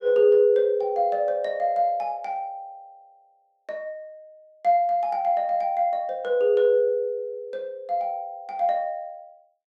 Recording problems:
none

